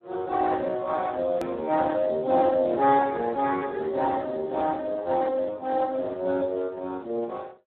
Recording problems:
telephone audio; 320 Hz to 2.2 kHz, Speex
hard cut with a click; at 1.5 s

